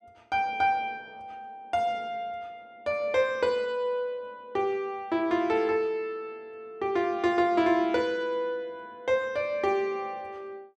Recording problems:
none

